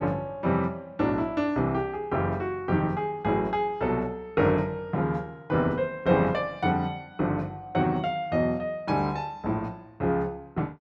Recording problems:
none

